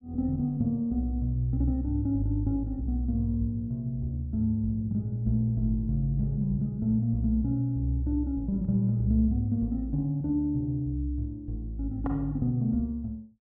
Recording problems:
none

